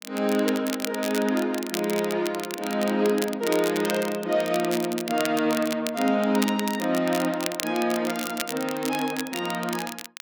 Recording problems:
crackling; vinyl, SNR 9 dB

